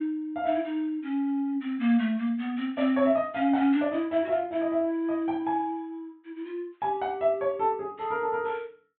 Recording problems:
low-pass filter; nothing above 4 kHz

